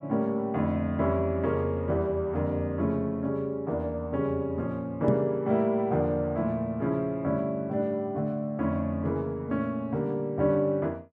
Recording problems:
microphone thump; at 5 s; peak +5 dB vs average level

